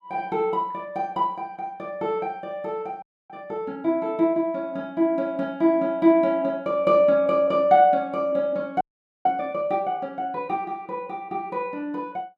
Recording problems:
frozen audio; at 3 s and at 9 s

